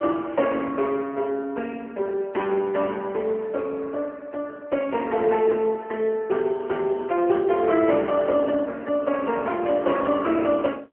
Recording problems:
telephone audio; 240 Hz to 3.1 kHz, AMR-NB

